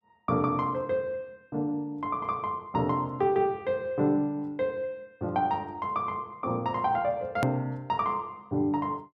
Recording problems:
hard cut with a click; at 7.5 s

